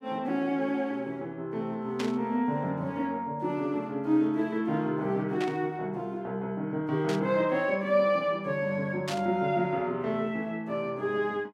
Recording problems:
burst of static; 4 times, first at 2 s; peak -2 dB vs average level

